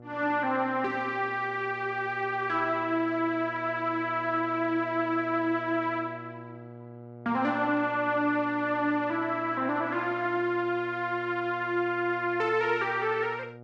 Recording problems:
electrical hum; 60 Hz, harmonics up to 1.3 kHz, SNR 17 dB

